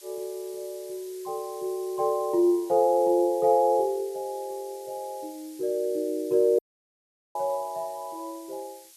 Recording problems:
background hiss; slope +4 dB per octave, SNR 21 dB
audio cutting out; at 6.5 s for 1 s

